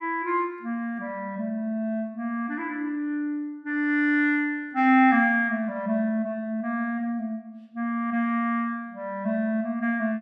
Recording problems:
none

